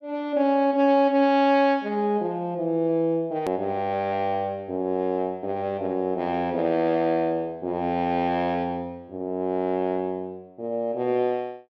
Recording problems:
click at an edit; at 3.5 s

